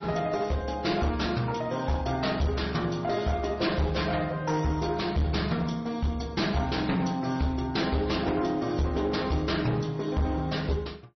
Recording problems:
lossy compression; MP3, log-spectral distance 4 dB, nothing above 5.8 kHz
distortion; hard clipping, uneven, signal-to-distortion ratio 10 dB

